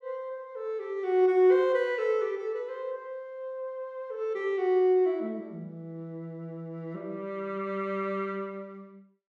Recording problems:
none

